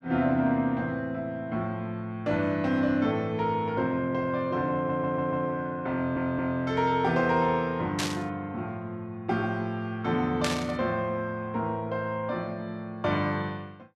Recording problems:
audio stuttering; at 5 s and at 6 s
static burst; at 8 s and at 10 s; peak +2 dB vs average level

